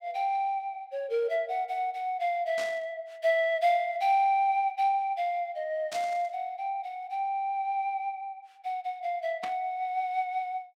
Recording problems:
burst of static; at 2.5 s, at 6 s and at 9.5 s; peak -6 dB vs average level

